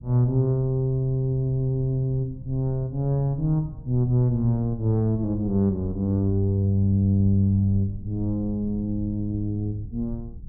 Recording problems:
rumble; below 96 Hz, SNR 17 dB

